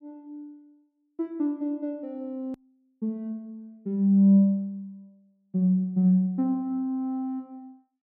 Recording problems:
click at an edit; at 2.5 s

